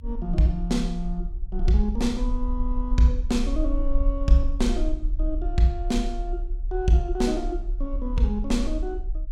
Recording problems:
rumble; below 40 Hz, strongest tone 36 Hz, SNR 4 dB

